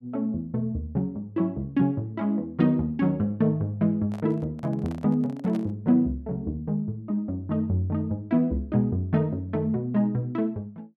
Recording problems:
handling noise; from 4 to 6 s; peak -11 dB vs average level

